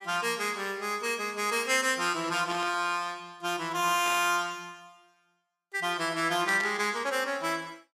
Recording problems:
static burst; at 2.5 s, at 4 s and at 6.5 s; peak -6 dB vs average level

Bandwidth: 15.5 kHz